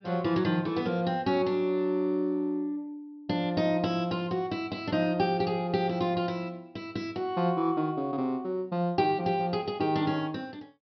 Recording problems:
low-pass filter; nothing above 5.5 kHz

